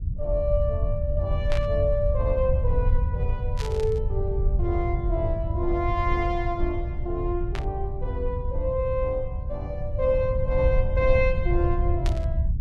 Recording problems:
rumble; below 84 Hz, SNR 0 dB
burst of static; 4 times, first at 1.5 s; peak -3 dB vs average level

